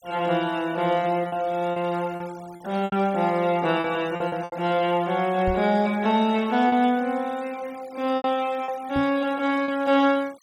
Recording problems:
denoising artefacts; signal-to-artefact ratio 23 dB
packet loss; 6% of the sound replaced, filled with repeated pitch periods
knock on the microphone; at 5.5 s and at 9 s; peak -3 dB vs average level

